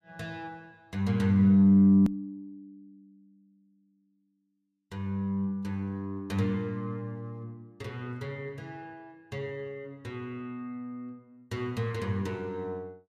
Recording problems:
edit click; at 2 s

